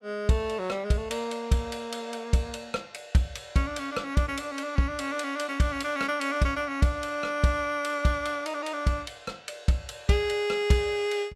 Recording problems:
none

